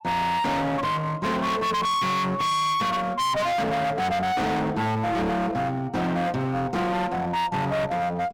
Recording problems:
distortion; hard clipping, uneven, signal-to-distortion ratio 5 dB

